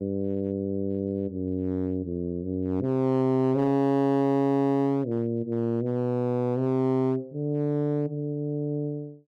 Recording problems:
distortion; hard clipping, uneven, signal-to-distortion ratio 10 dB

